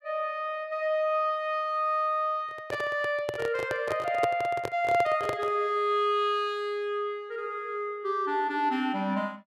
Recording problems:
handling noise; from 2.5 to 5.5 s; peak +2 dB vs average level

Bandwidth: 13.5 kHz